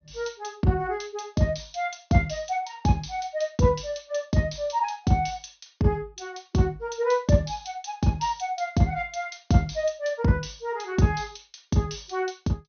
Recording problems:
low-pass filter; nothing above 6.4 kHz

